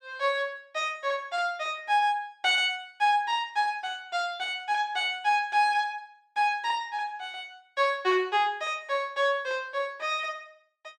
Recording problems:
none

